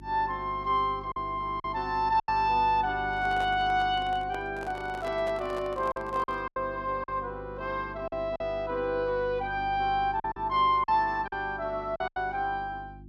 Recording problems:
electrical hum; 50 Hz, harmonics up to 350 Hz, SNR 17 dB
lost packets; 6% of the sound replaced, filled with silence
handling noise; from 3 to 6.5 s; peak -7 dB vs average level

